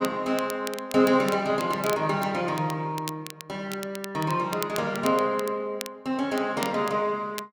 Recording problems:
crackling; vinyl, SNR 14 dB

